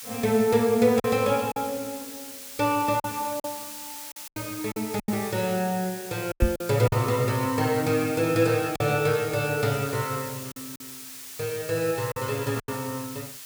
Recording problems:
hiss; slope +3 dB per octave, SNR 12 dB
packet loss; 6% of the sound replaced, filled with silence
microphone bump; at 6.5 s; peak +7 dB vs average level

